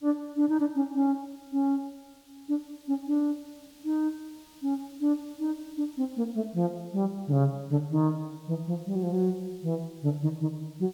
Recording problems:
background hiss; SNR 27 dB

